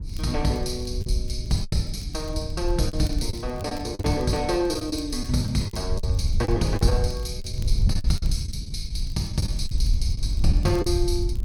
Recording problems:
low-frequency rumble; below 110 Hz, SNR 12 dB
wind on the microphone; below 74 Hz, SNR 2 dB
crackling; vinyl, SNR 25 dB
packet loss; 9% of the sound replaced, filled with the last packet

